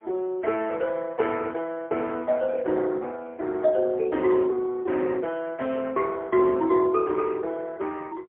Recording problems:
telephone audio; 260 Hz to 3.5 kHz, AMR-NB, then MP3

